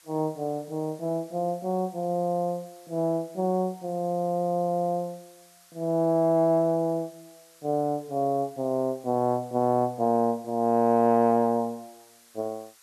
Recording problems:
hiss; SNR 27 dB

